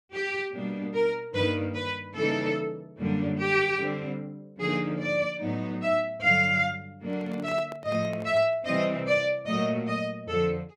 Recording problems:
microphone handling noise; from 7 to 8.5 s; peak -11 dB vs average level

